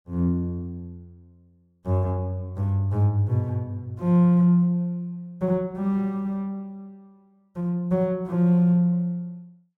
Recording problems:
none

